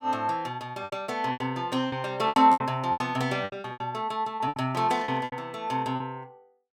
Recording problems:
packet loss; 16% of the sound replaced, filled with repeated pitch periods
static burst; at 5 s; peak -10 dB vs average level

